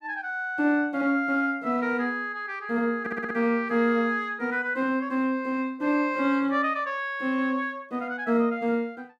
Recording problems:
audio stuttering; at 3 s

